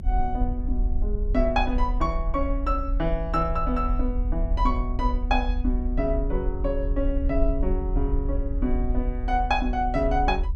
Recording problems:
low-frequency rumble; below 50 Hz, strongest tone 38 Hz, SNR 1 dB

